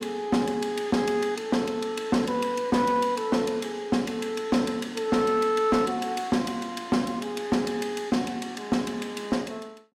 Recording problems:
distorted audio; hard clipping, signal-to-distortion ratio 10 dB

